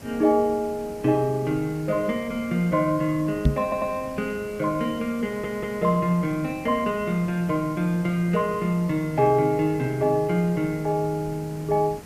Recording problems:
hiss; slope -5 dB per octave, SNR 17 dB
knock on the microphone; at 3.5 s; peak +7 dB vs average level
stutter; at 3.5 s and at 5.5 s

